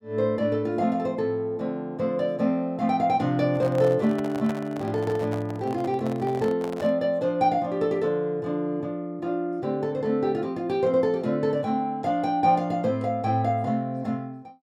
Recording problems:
handling noise; from 3.5 to 7 s; peak -7 dB vs average level

